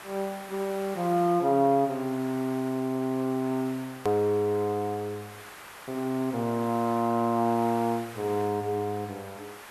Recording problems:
background hiss; SNR 17 dB
click at an edit; at 4 s

